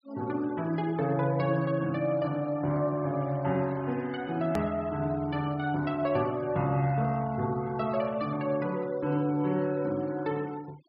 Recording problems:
low-pass filter; nothing above 5.5 kHz
noise reduction artefacts; signal-to-artefact ratio 23 dB
click at an edit; at 4.5 s

